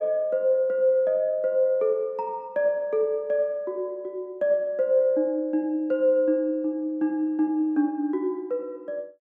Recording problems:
none

